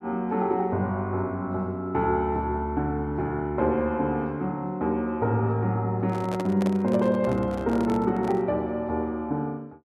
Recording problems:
handling noise; from 6 to 8.5 s; peak -3 dB vs average level

